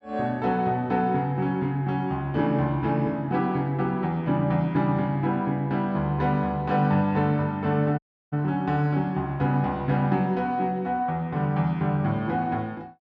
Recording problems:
audio cutting out; at 8 s

